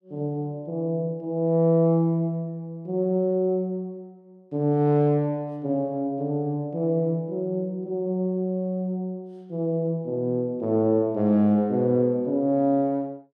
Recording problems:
none

